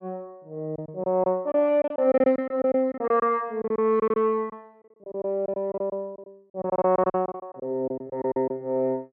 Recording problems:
lost packets; 14% of the sound replaced, filled with silence

